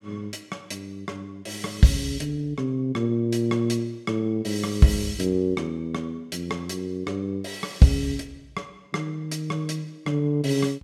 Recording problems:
none

